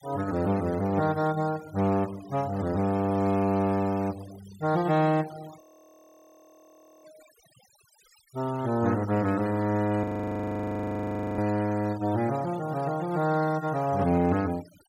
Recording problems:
denoising artefacts; signal-to-artefact ratio 19 dB
frozen audio; at 5.5 s for 1.5 s and at 10 s for 1.5 s

